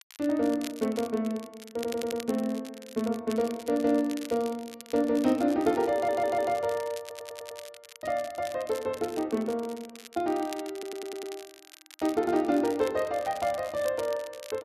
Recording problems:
crackle; vinyl, SNR 17 dB
audio stuttering; 4 times, first at 2 s

